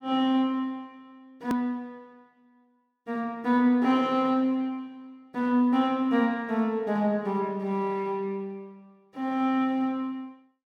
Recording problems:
click at an edit; at 1.5 s

